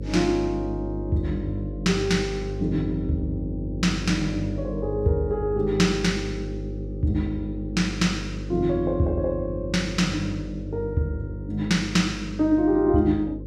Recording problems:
hum; 50 Hz, harmonics up to 550 Hz, SNR 8 dB

